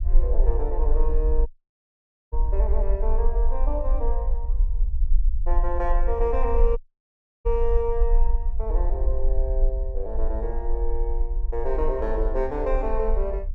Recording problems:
low-frequency rumble; below 44 Hz, strongest tone 22 Hz, SNR -3 dB
dropout; at 1.5 s for 1 s and at 7 s for 0.5 s

